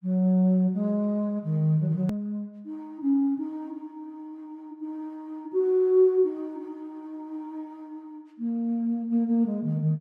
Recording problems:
hard cut with a click; at 2 s

